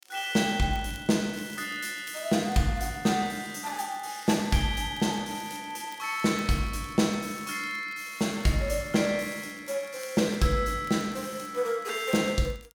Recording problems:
crackle; vinyl, SNR 25 dB

